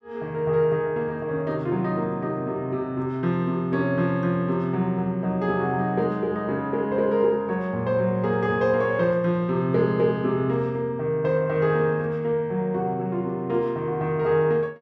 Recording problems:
none

